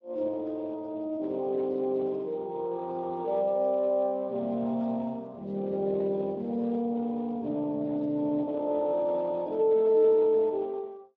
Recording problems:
lossy codec; Speex, log-spectral distance 2 dB

